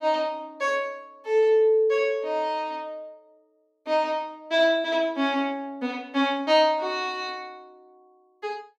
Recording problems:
none

